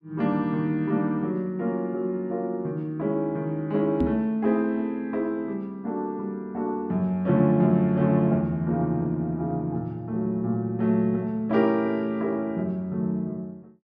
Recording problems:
knock on the microphone; at 4 s; peak +3 dB vs average level

